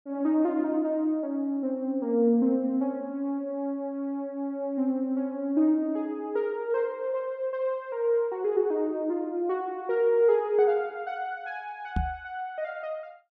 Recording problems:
knock on the microphone; at 12 s; peak +2 dB vs average level

